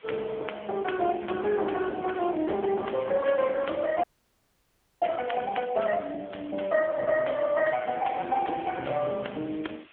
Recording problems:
telephone audio; 220 Hz to 3.4 kHz, AMR-NB
hiss; SNR 27 dB
audio freezing; at 4 s for 1 s

